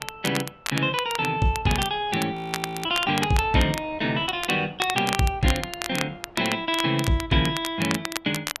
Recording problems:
wind on the microphone; below 1 kHz, SNR 25 dB
crackling; vinyl, SNR 8 dB
frozen audio; at 2.5 s for 0.5 s

